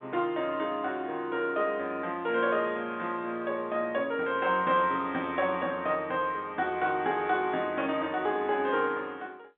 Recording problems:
telephone audio; 190 Hz to 3.7 kHz, G.711

